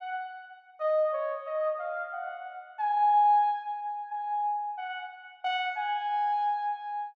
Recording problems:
none

